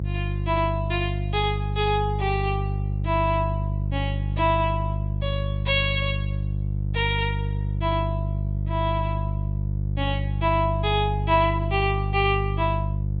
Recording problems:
low-pass filter; nothing above 4.3 kHz
hum; 50 Hz, harmonics up to 350 Hz, SNR 1 dB

